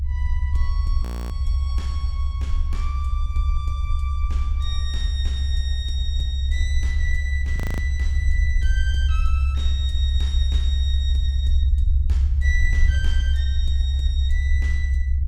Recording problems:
low-frequency rumble; below 70 Hz, strongest tone 68 Hz, SNR -11 dB
audio freezing; at 1 s and at 7.5 s

